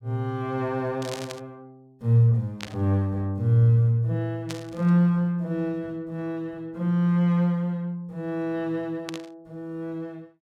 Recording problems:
static burst; 4 times, first at 1 s; peak -6 dB vs average level

